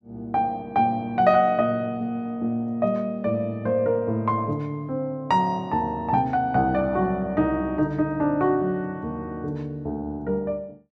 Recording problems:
none

